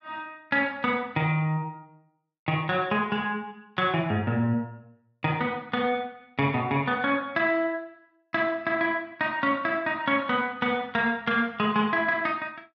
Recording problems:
none

